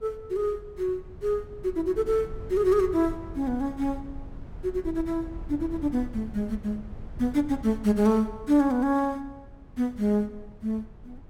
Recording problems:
wind noise; below 110 Hz, SNR 16 dB

